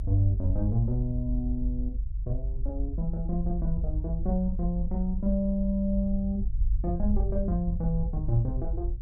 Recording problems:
low-frequency rumble; below 52 Hz, strongest tone 46 Hz, SNR 2 dB

